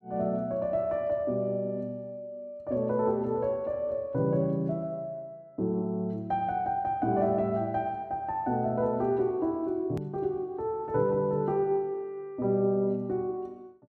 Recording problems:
edit click; at 10 s

